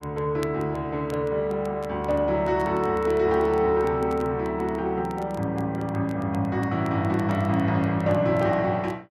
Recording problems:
crackling; vinyl, SNR 28 dB

